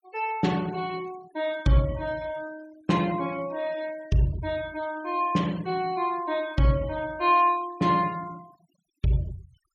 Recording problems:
noise reduction artefacts; signal-to-artefact ratio 22 dB

